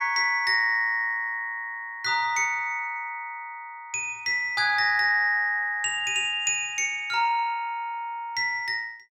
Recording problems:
none

